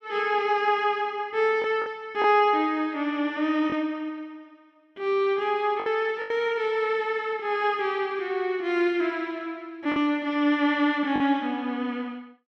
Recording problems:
lost packets; 3% of the sound replaced, filled with the last packet

